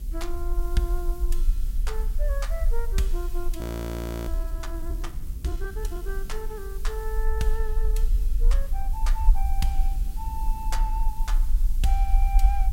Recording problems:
mains hum; 50 Hz, harmonics up to 550 Hz, SNR 18 dB
hiss; slope +4 dB per octave, SNR 14 dB
rumble; below 42 Hz, strongest tone 22 Hz, SNR -7 dB
wind on the microphone; below 170 Hz, SNR 12 dB
audio freezing; at 3.5 s for 0.5 s

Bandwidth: 16 kHz